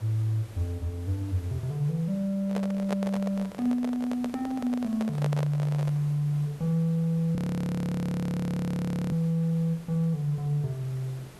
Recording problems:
hiss; slope -5 dB per octave, SNR 22 dB
handling noise; from 2.5 to 6 s; peak -1 dB vs average level
frozen audio; at 7.5 s for 2 s

